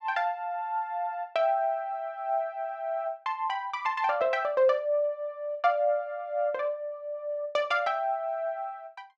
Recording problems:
none

